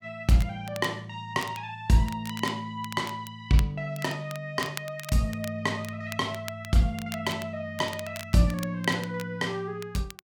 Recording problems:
crackle; vinyl, SNR 15 dB

